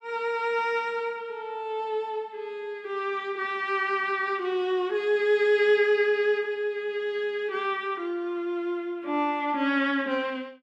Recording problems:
none

